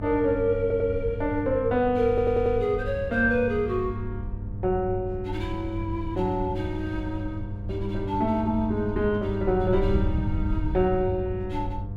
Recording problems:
hum; 50 Hz, harmonics up to 700 Hz, SNR 10 dB
wind noise; below 96 Hz, SNR 9 dB
audio stuttering; at 0.5 s and at 2 s

